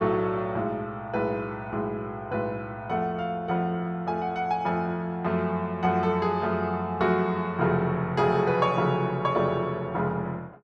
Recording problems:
none

